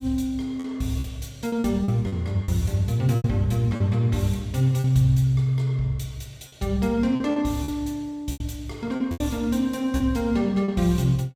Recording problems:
packet loss; 8% of the sound replaced, filled with repeated pitch periods

